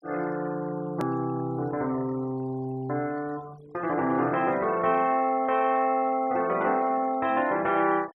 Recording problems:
noise reduction artefacts; signal-to-artefact ratio 23 dB
edit click; at 1 s

